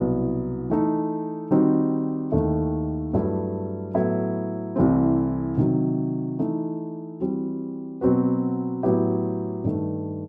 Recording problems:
none

